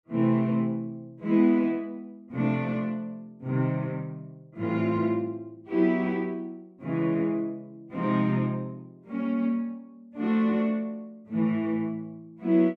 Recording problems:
none

